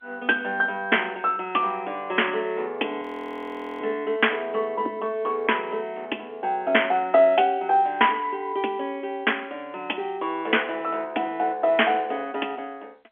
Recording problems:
phone line; 260 Hz to 3.4 kHz, G.711
frozen audio; at 3 s for 1 s

